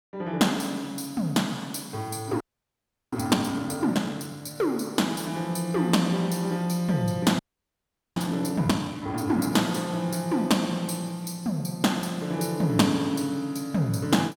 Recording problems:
audio freezing; at 2.5 s for 0.5 s and at 7.5 s for 1 s

